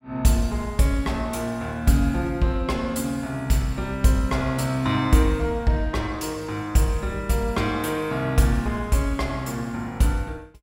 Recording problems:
none

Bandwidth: 16.5 kHz